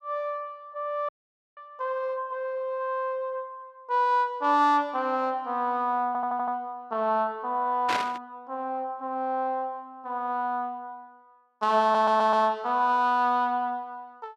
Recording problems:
dropout; at 1 s
stutter; at 6 s and at 12 s
burst of static; at 8 s; peak +1 dB vs average level

